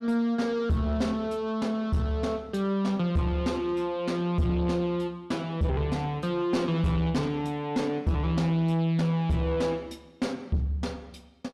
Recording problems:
distortion; soft clipping, signal-to-distortion ratio 11 dB

